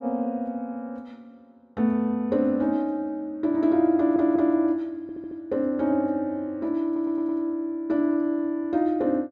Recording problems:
audio stuttering; at 4 s, at 5 s and at 7 s

